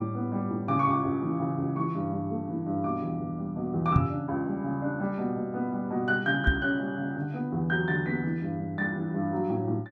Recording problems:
microphone thump; at 4 s and at 6.5 s; peak +8 dB vs average level

